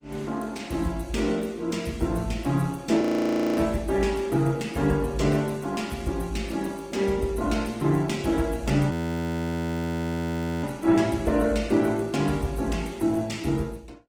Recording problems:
lossy compression; Opus, log-spectral distance 4 dB
audio freezing; at 3 s for 0.5 s and at 9 s for 1.5 s

